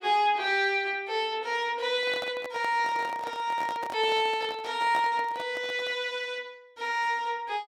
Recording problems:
handling noise; from 2 to 6 s; peak -4 dB vs average level

